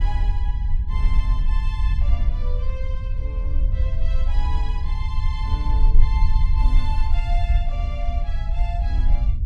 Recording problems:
low-frequency rumble; below 54 Hz, strongest tone 20 Hz, SNR -13 dB

